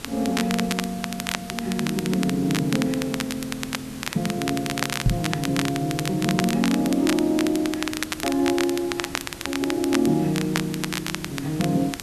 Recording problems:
background hiss; SNR 14 dB
crackling; vinyl, SNR 6 dB
microphone thump; at 5 s; peak +8 dB vs average level

